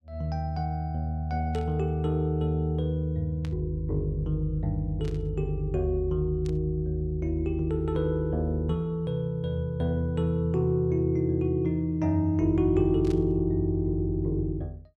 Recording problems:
burst of static; 5 times, first at 1.5 s; peak -13 dB vs average level

